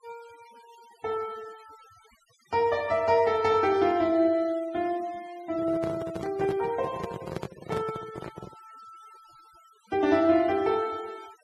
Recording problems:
noise reduction artefacts; signal-to-artefact ratio 23 dB
handling noise; from 5.5 to 8.5 s; peak -3 dB vs average level

